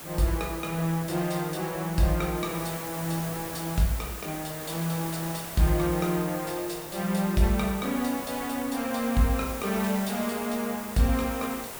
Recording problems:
hiss; slope -3 dB per octave, SNR 9 dB
wind on the microphone; below 540 Hz, SNR 23 dB

